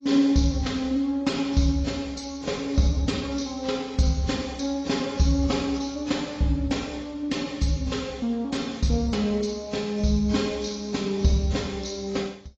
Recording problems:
lossy compression; AAC, log-spectral distance 5 dB, nothing above 16.5 kHz

